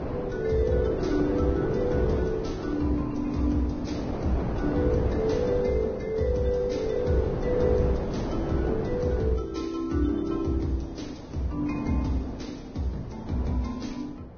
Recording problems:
lossy codec; Vorbis, log-spectral distance 2 dB, nothing above 6.3 kHz
wind on the microphone; below 500 Hz, SNR 5 dB

